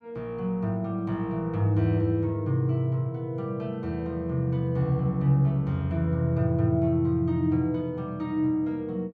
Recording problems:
none

